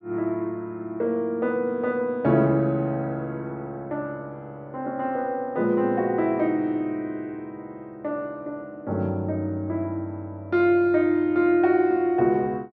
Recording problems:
treble cut off; nothing above 6.9 kHz

